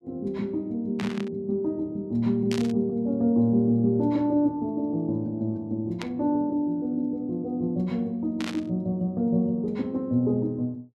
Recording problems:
static burst; 4 times, first at 1 s; peak -4 dB vs average level

